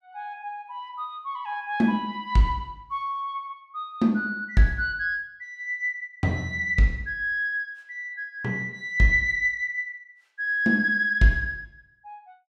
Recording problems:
none

